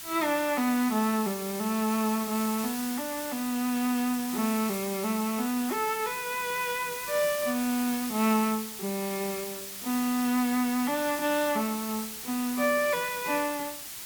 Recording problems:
background hiss; slope +2 dB per octave, SNR 7 dB

